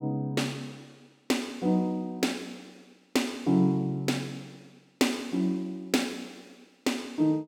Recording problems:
none

